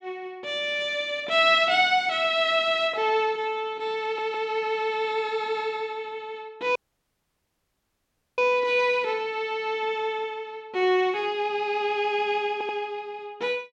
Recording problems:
stutter; at 4 s and at 13 s
audio cutting out; at 7 s for 1.5 s

